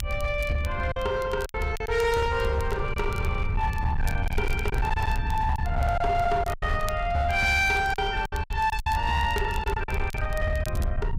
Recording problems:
distortion; hard clipping, signal-to-distortion ratio 12 dB
low-frequency rumble; below 90 Hz, SNR 6 dB
crackle; vinyl, SNR 21 dB
packet loss; 7% of the sound replaced, filled with silence

